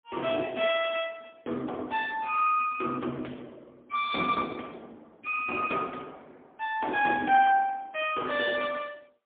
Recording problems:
phone line; 190 Hz to 3.5 kHz, AMR-NB, then MP3

